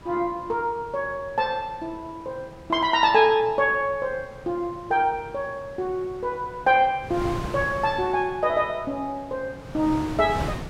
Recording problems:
wind on the microphone; below 720 Hz, SNR 15 dB

